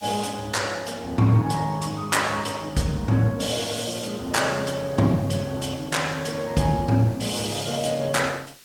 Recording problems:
codec artefacts; Opus, log-spectral distance 4 dB, nothing above 18.3 kHz
background hiss; SNR 25 dB

